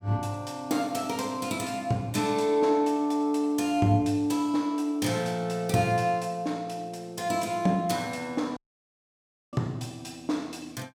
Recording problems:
audio cutting out; at 8.5 s for 1 s

